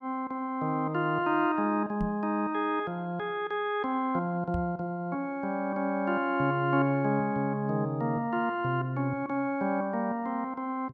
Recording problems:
microphone bump; at 2 s and at 4.5 s; peak -1 dB vs average level

